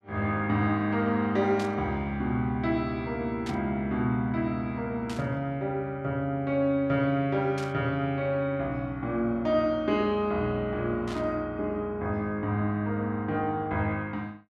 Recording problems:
static burst; 5 times, first at 1.5 s; peak -9 dB vs average level

